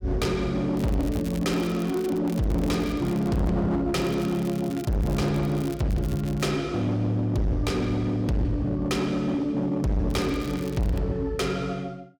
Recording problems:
distortion; hard clipping, uneven, signal-to-distortion ratio 7 dB
crackle; from 0.5 to 3.5 s, from 4 to 6.5 s and at 10 s; loose cable, SNR 19 dB

